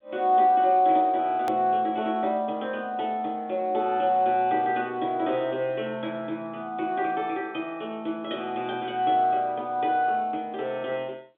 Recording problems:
telephone audio; 240 Hz to 3.9 kHz, G.711
click at an edit; at 1.5 s

